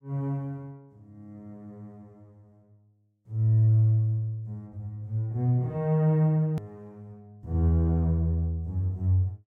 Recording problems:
edit click; at 6.5 s

